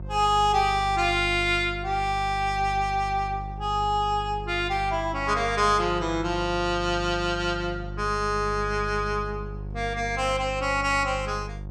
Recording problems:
hum; 50 Hz, harmonics up to 550 Hz, SNR 11 dB

